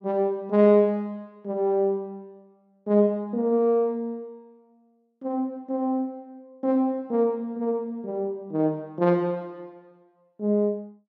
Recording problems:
none

